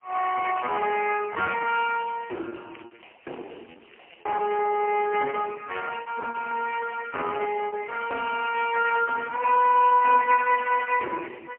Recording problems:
telephone audio; 300 Hz to 2.8 kHz, AMR-NB, then MP3
packet loss; 11% of the sound replaced, filled with repeated pitch periods
crackling; at 2.5 s, from 3 to 5 s and from 7.5 to 10 s; loose cable, SNR 27 dB

